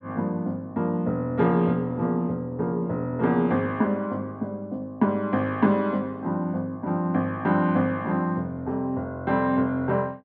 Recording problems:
none

